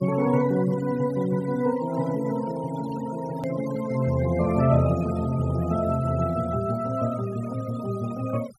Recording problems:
denoising artefacts; signal-to-artefact ratio 17 dB
hard cut with a click; at 3.5 s

